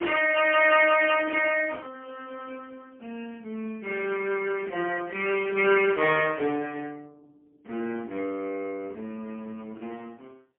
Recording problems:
telephone audio; 260 Hz to 3.1 kHz, AMR-NB, then MP3

